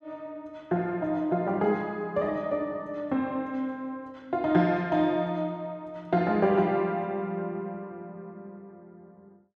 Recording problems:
none

